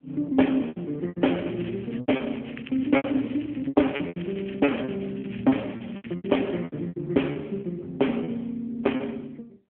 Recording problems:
phone line; 150 Hz to 3.2 kHz, AMR-NB
packet loss; 13% of the sound replaced, filled with repeated pitch periods
crackling; from 1.5 to 6.5 s; loose cable, SNR 19 dB

